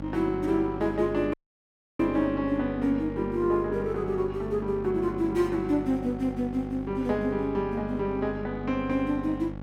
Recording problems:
hum; 50 Hz, harmonics up to 1.4 kHz, SNR 10 dB
dropout; at 1.5 s for 0.5 s

